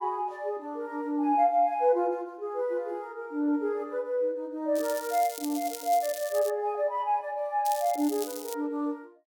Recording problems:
crackle; from 5 to 6.5 s and at 7.5 s; loose cable, SNR 11 dB

